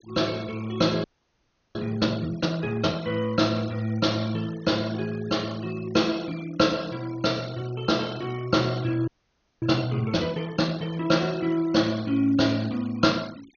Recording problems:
low-pass filter; nothing above 6.6 kHz
denoising artefacts; signal-to-artefact ratio 21 dB
audio freezing; at 1 s for 0.5 s and at 9 s for 0.5 s

